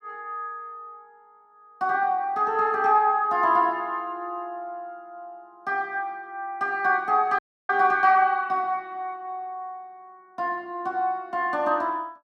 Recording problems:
audio cutting out; at 7.5 s

